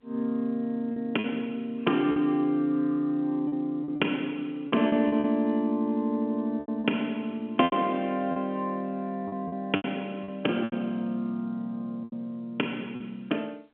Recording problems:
phone line; 220 Hz to 3.4 kHz, G.711
packet loss; 8% of the sound replaced, filled with repeated pitch periods

